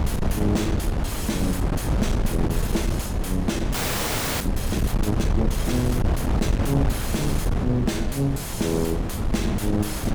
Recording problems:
distortion; soft clipping, signal-to-distortion ratio 7 dB
wind noise; below 210 Hz, SNR -1 dB
audio freezing; at 3.5 s for 0.5 s

